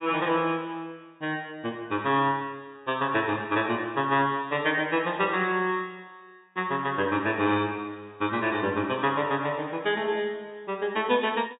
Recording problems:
treble missing; nothing above 4 kHz

